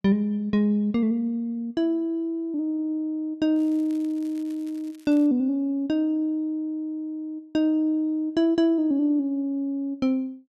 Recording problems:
crackling; from 3.5 to 5.5 s; loose cable, SNR 30 dB

